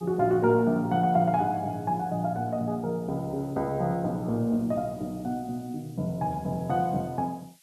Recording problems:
background hiss; slope +7 dB per octave, SNR 29 dB

